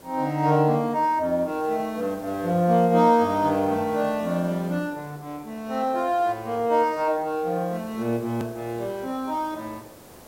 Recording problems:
hiss; SNR 23 dB
hard cut with a click; at 8.5 s

